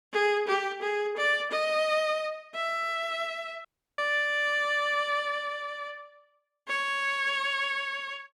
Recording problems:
dropout; at 3.5 s

